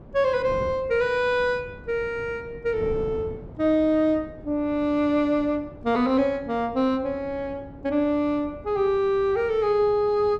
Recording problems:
wind on the microphone; below 330 Hz, SNR 18 dB

